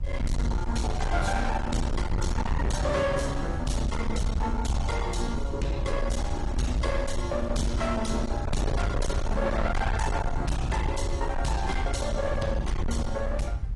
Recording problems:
lossy compression; AAC, log-spectral distance 3 dB, nothing above 11 kHz
distorted audio; hard clipping, signal-to-distortion ratio 7 dB
low-frequency rumble; below 88 Hz, SNR 2 dB
wind on the microphone; below 1.6 kHz, SNR 19 dB

